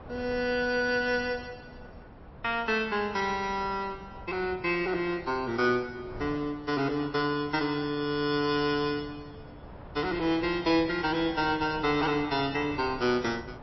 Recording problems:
lossy codec; MP3, log-spectral distance 3 dB, nothing above 5.7 kHz
wind on the microphone; below 660 Hz, SNR 18 dB

